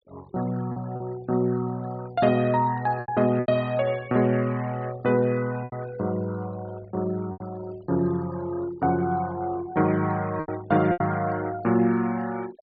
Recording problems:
treble cut off; nothing above 4.7 kHz
denoising artefacts; signal-to-artefact ratio 20 dB
lost packets; 4% of the sound replaced, filled with repeated pitch periods

